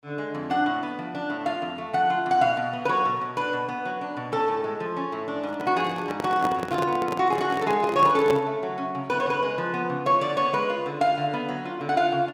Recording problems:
microphone handling noise; from 5.5 to 8.5 s; peak 0 dB vs average level

